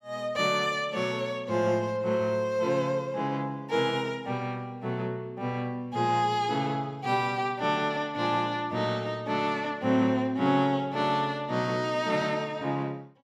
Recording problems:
none

